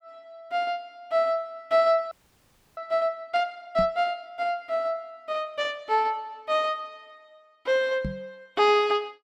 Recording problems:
audio freezing; at 2 s for 0.5 s
knock on the microphone; at 4 s and at 8 s; peak -2 dB vs average level

